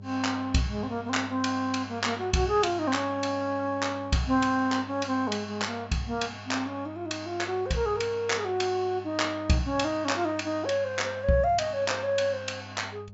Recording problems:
treble cut off; nothing above 8 kHz
electrical hum; 50 Hz, harmonics up to 600 Hz, SNR 18 dB

